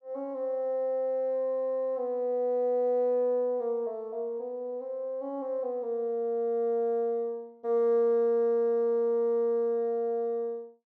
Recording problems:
none

